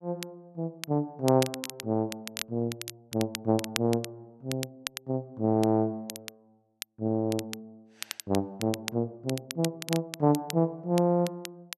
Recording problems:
crackling; vinyl, SNR 10 dB

